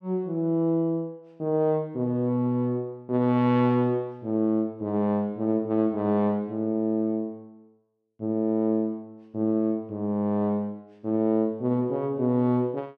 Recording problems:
none

